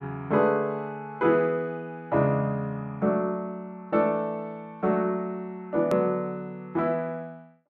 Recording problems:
edit click; at 6 s

